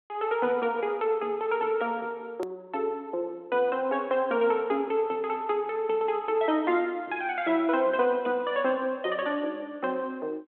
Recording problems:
phone line; 260 Hz to 3.4 kHz, G.726
click at an edit; at 2.5 s

